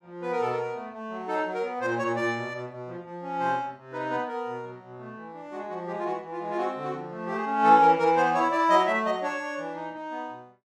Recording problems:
none

